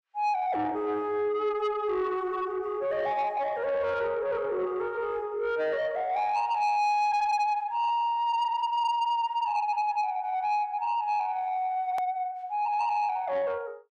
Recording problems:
distorted audio; soft clipping, signal-to-distortion ratio 11 dB
edit click; at 12 s

